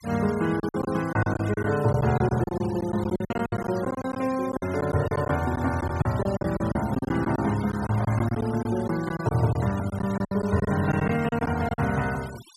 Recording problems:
noise reduction artefacts; signal-to-artefact ratio 17 dB
packet loss; 13% of the sound replaced, filled with silence

